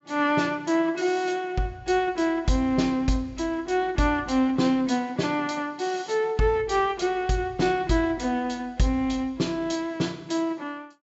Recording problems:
treble missing; nothing above 8 kHz

